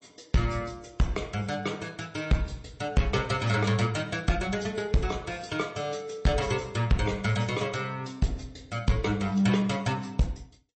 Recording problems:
lossy codec; MP3, log-spectral distance 4 dB, nothing above 8.2 kHz
distortion; hard clipping, uneven, signal-to-distortion ratio 10 dB

